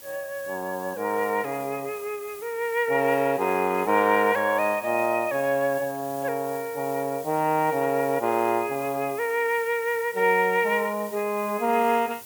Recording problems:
background hiss; SNR 17 dB

